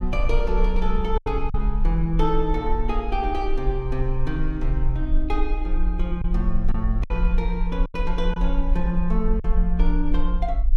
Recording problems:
rumble; below 42 Hz, strongest tone 18 Hz, SNR -1 dB
lost packets; 3% of the sound replaced, filled with silence

